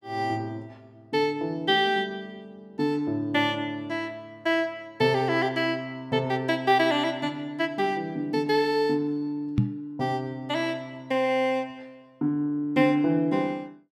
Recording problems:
microphone bump; at 9.5 s; peak +7 dB vs average level

